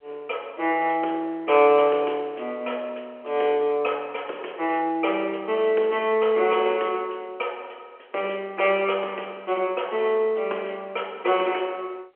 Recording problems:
telephone audio; 340 Hz to 3.2 kHz, G.711

